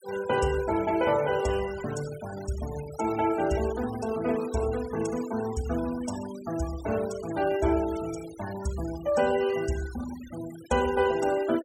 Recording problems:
denoising artefacts; signal-to-artefact ratio 16 dB

